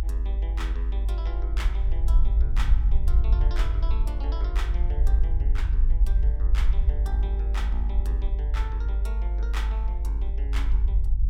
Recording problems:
low-frequency rumble; below 52 Hz, strongest tone 50 Hz, SNR -14 dB

